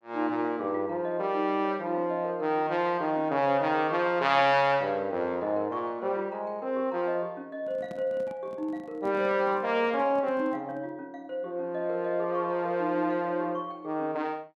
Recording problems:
microphone handling noise; from 7.5 to 11 s; peak -10 dB vs average level

